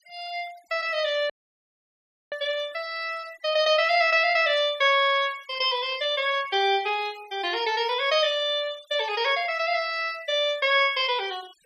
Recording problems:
noise reduction artefacts; signal-to-artefact ratio 22 dB
dropout; at 1.5 s for 1 s

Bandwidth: 14.5 kHz